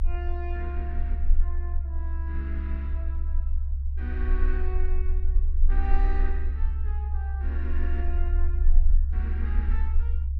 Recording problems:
low-frequency rumble; below 68 Hz, strongest tone 20 Hz, SNR -13 dB

